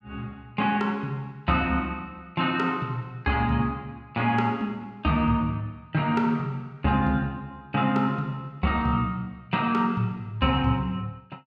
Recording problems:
none

